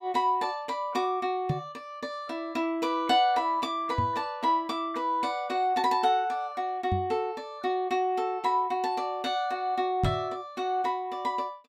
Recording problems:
microphone bump; 4 times, first at 1.5 s; peak +4 dB vs average level

